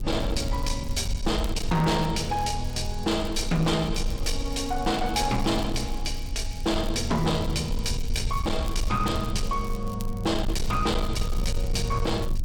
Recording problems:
distorted audio; soft clipping, signal-to-distortion ratio 11 dB
low-frequency rumble; below 64 Hz, strongest tone 24 Hz, SNR 6 dB
crackle; vinyl, SNR 21 dB

